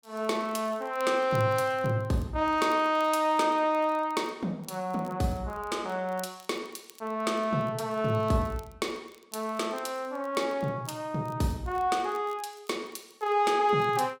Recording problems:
crackle; vinyl, SNR 28 dB

